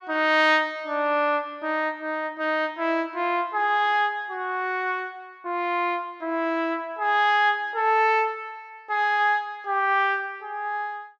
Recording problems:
none

